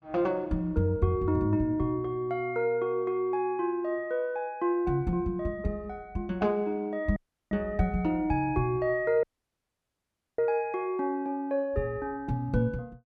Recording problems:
dropout; at 7 s and at 9 s for 1 s

